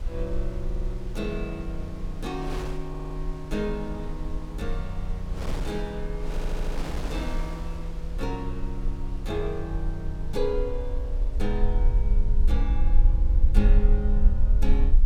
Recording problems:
low-frequency rumble; below 48 Hz, SNR -4 dB
wind noise; below 650 Hz, SNR 8 dB
audio stuttering; at 0.5 s, at 3 s and at 6.5 s

